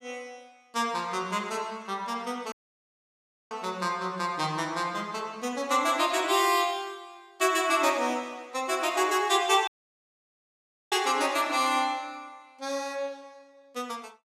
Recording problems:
audio cutting out; at 2.5 s for 1 s and at 9.5 s for 1 s

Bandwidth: 14.5 kHz